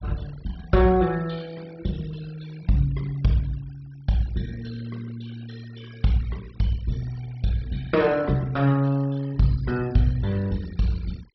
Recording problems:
low-pass filter; nothing above 5.7 kHz
noise reduction artefacts; signal-to-artefact ratio 23 dB

